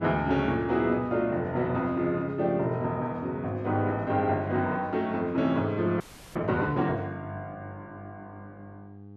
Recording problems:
mains hum; 50 Hz, harmonics up to 800 Hz, SNR 19 dB
frozen audio; at 6 s

